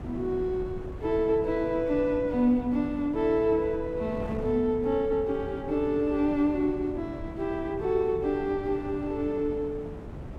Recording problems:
wind noise; below 300 Hz, SNR 13 dB

